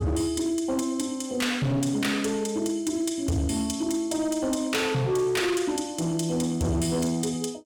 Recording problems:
distorted audio; hard clipping, signal-to-distortion ratio 11 dB

